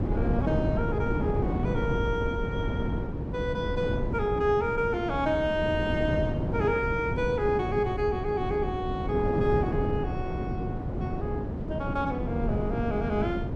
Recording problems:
wind on the microphone; below 300 Hz, SNR 1 dB

